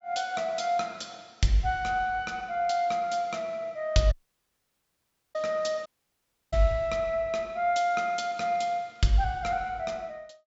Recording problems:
treble missing; nothing above 8 kHz
dropout; at 4 s for 1 s and at 6 s for 0.5 s

